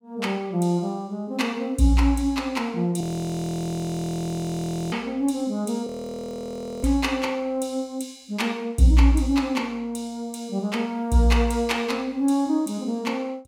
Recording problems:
frozen audio; at 3 s for 2 s and at 6 s for 1 s

